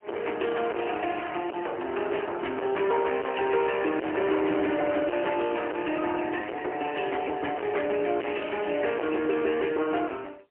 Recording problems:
phone line; 280 Hz to 3.1 kHz, AMR-NB, then MP3
distorted audio; soft clipping, signal-to-distortion ratio 4 dB

